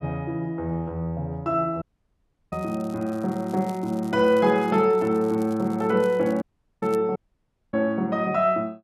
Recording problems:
dropout; at 2 s for 0.5 s, at 6.5 s and at 7 s for 0.5 s
crackling; from 2.5 to 5 s and from 5 to 7 s; loose cable, SNR 27 dB

